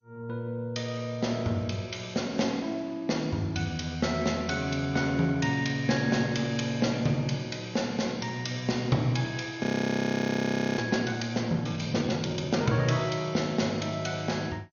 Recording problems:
lossy compression; MP2, log-spectral distance 5 dB, nothing above 6.7 kHz
frozen audio; at 9.5 s for 1 s

